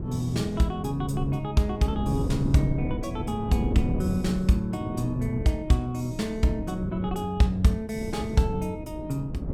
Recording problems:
wind noise; below 240 Hz, SNR 6 dB

